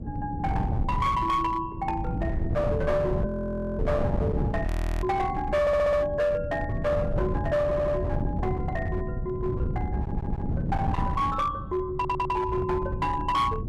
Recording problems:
distorted audio; hard clipping, uneven, signal-to-distortion ratio 10 dB
wind noise; below 200 Hz, SNR 3 dB
frozen audio; at 3.5 s for 0.5 s and at 4.5 s
stutter; 4 times, first at 5.5 s

